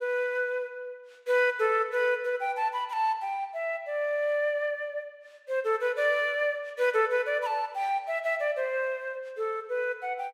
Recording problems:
none

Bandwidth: 16 kHz